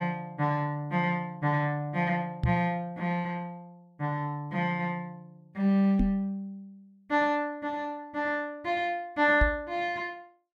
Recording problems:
microphone thump; at 2.5 s, at 6 s and at 9.5 s; peak +5 dB vs average level

